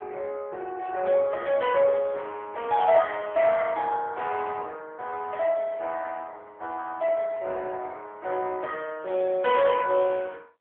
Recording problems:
phone line; 340 Hz to 3.4 kHz, AMR-NB

